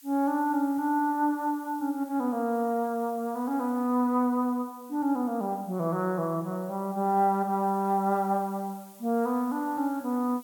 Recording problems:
background hiss; slope +5 dB per octave, SNR 24 dB

